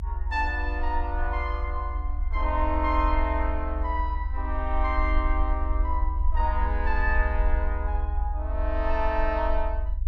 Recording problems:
low-frequency rumble; below 68 Hz, SNR -1 dB

